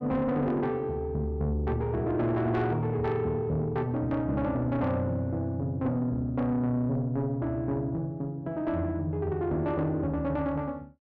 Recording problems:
distorted audio; soft clipping, signal-to-distortion ratio 10 dB

